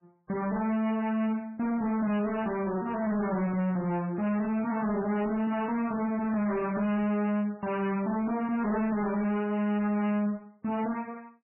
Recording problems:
lossy codec; MP3, log-spectral distance 2 dB, nothing above 2.9 kHz
distorted audio; hard clipping, signal-to-distortion ratio 7 dB
static burst; 4 times, first at 2 s; peak -17 dB vs average level

